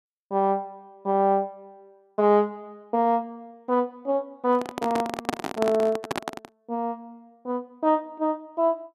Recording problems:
microphone handling noise; from 4.5 to 6.5 s; peak +3 dB vs average level

